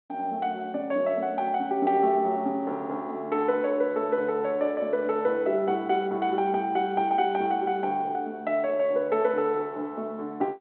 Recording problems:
phone line; 220 Hz to 3.7 kHz, G.726

